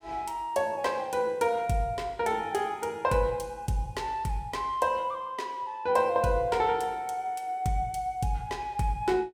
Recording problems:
none

